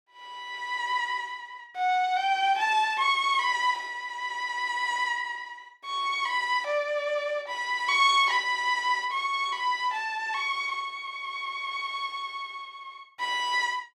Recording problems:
none

